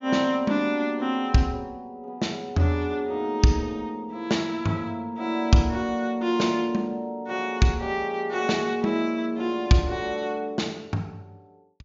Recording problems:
treble cut off; nothing above 7.2 kHz

